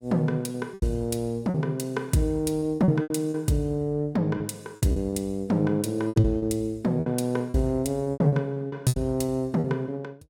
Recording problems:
packet loss; 11% of the sound replaced, filled with repeated pitch periods

